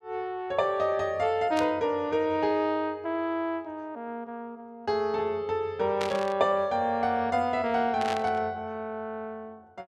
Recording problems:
static burst; at 1.5 s, at 6 s and at 8 s; peak -3 dB vs average level

